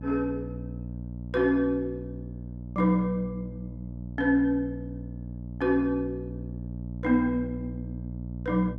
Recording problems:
hum; 60 Hz, harmonics up to 660 Hz, SNR 10 dB

